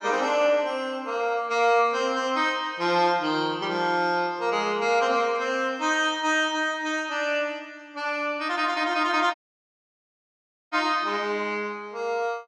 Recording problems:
audio cutting out; at 9.5 s for 1.5 s

